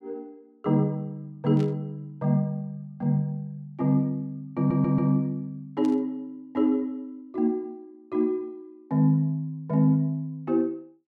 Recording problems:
static burst; at 1.5 s and at 6 s; peak -15 dB vs average level
audio stuttering; at 4.5 s

